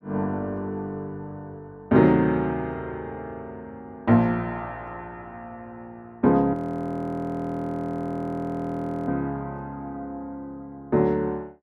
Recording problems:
frozen audio; at 6.5 s for 2.5 s

